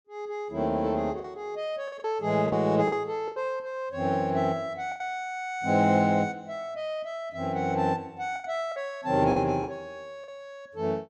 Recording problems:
lost packets; 5% of the sound replaced, filled with the last packet

